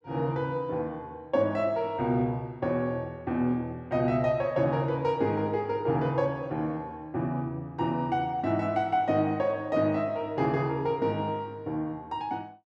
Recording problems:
none

